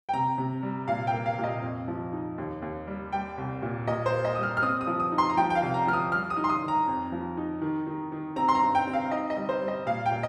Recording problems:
none

